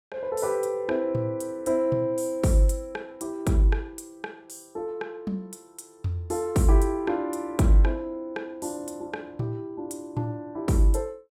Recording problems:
none

